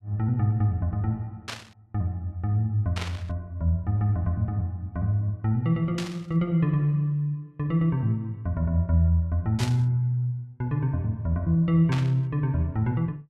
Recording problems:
static burst; 5 times, first at 1.5 s; peak -4 dB vs average level

